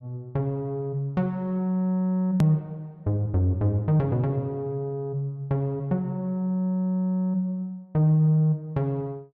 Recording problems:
click at an edit; at 2.5 s

